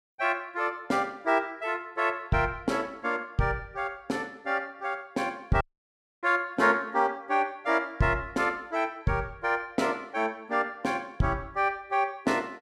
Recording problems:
dropout; at 5.5 s for 0.5 s

